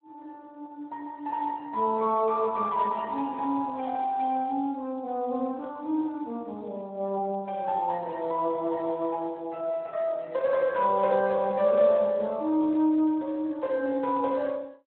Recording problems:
telephone audio; 280 Hz to 3 kHz, Speex

